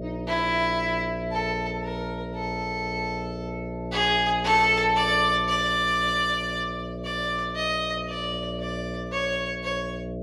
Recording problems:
hum; 60 Hz, harmonics up to 660 Hz, SNR 9 dB

